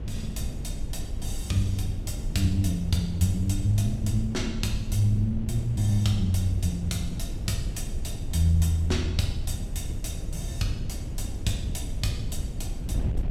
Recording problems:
wind noise; below 110 Hz, SNR 6 dB

